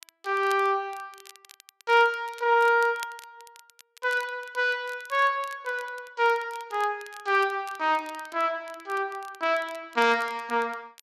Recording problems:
crackle; vinyl, SNR 24 dB

